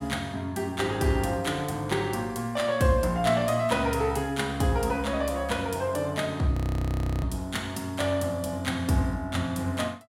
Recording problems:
audio freezing; at 6.5 s for 0.5 s

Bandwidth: 16 kHz